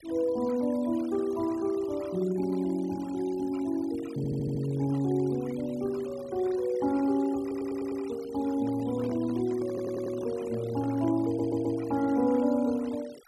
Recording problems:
denoising artefacts; signal-to-artefact ratio 21 dB
stutter; 4 times, first at 4 s
handling noise; from 8.5 to 11 s; peak -9 dB vs average level

